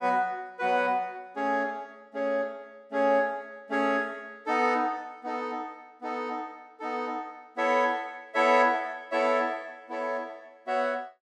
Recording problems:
none

